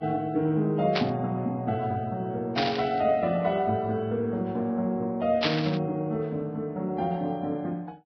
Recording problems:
lossy codec; Vorbis, log-spectral distance 2 dB
burst of static; at 1 s, at 2.5 s and at 5.5 s; peak +5 dB vs average level

